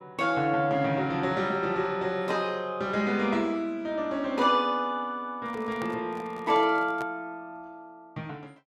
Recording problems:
handling noise; from 5.5 to 7 s; peak -7 dB vs average level

